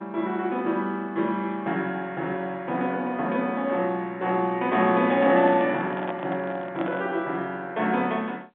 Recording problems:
telephone audio; 190 Hz to 3.6 kHz, G.711
handling noise; from 5 to 7 s; peak -4 dB vs average level

